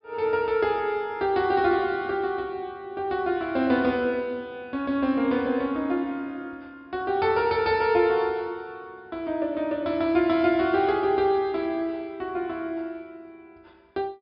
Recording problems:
treble cut off; nothing above 5.5 kHz

